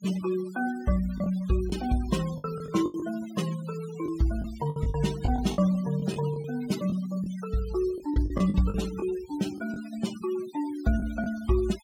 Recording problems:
denoising artefacts; signal-to-artefact ratio 16 dB
lost packets; 8% of the sound replaced, filled with the last packet

